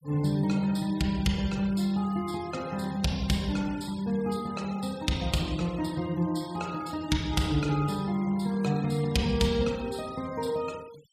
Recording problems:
noise reduction artefacts; signal-to-artefact ratio 20 dB

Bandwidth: 14.5 kHz